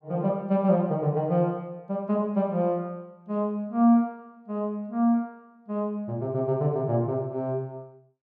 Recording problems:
none

